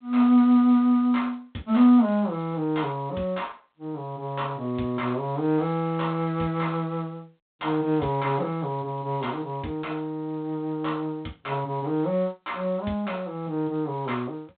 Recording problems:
telephone audio; 170 Hz to 3.8 kHz, G.726

